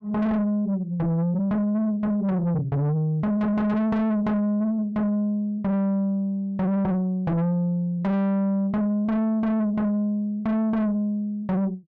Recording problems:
distortion; soft clipping, signal-to-distortion ratio 6 dB

